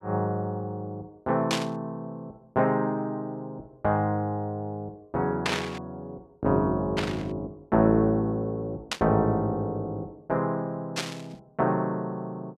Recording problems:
burst of static; 5 times, first at 1.5 s; peak +5 dB vs average level

